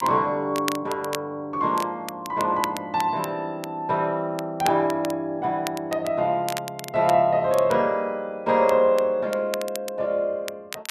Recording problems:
crackle; vinyl, SNR 14 dB

